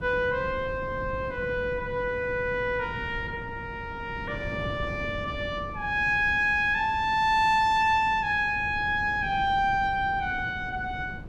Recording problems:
wind noise; below 250 Hz, SNR 14 dB

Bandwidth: 14.5 kHz